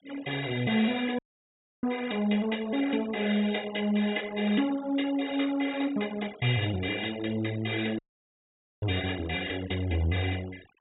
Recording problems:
treble missing; nothing above 4 kHz
noise reduction artefacts; signal-to-artefact ratio 17 dB
dropout; at 1 s for 0.5 s and at 8 s for 1 s

